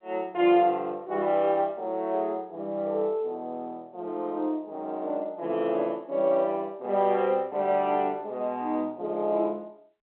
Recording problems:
phone line; 220 Hz to 3.5 kHz, G.711

